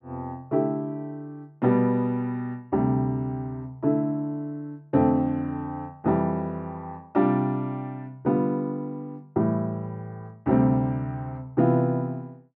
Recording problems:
none

